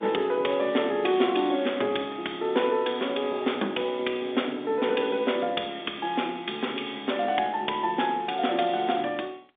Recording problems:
phone line; 240 Hz to 3.6 kHz, G.711

